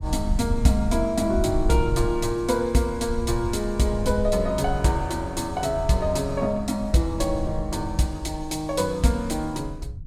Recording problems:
low-frequency rumble; below 82 Hz, SNR 8 dB

